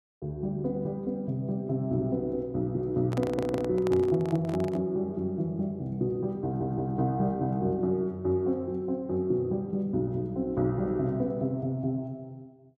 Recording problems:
microphone handling noise; from 3 to 5 s; peak -4 dB vs average level
stutter; at 3 s and at 6.5 s

